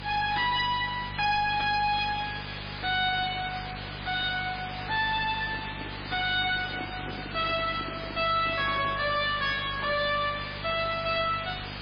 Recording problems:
lossy compression; MP3, log-spectral distance 17 dB, nothing above 5 kHz
distortion; hard clipping, uneven, signal-to-distortion ratio 5 dB
electrical hum; 50 Hz, harmonics up to 750 Hz, SNR 15 dB
background hiss; SNR 11 dB
microphone handling noise; from 5.5 to 9 s; peak -7 dB vs average level

